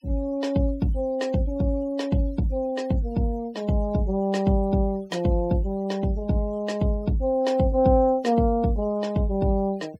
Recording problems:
noise reduction artefacts; signal-to-artefact ratio 26 dB

